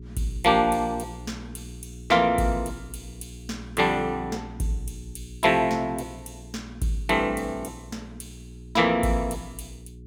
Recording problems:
electrical hum; 60 Hz, harmonics up to 420 Hz, SNR 17 dB

